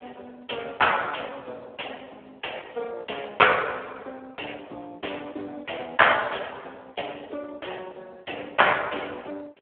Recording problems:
phone line; 320 Hz to 3.4 kHz, Speex

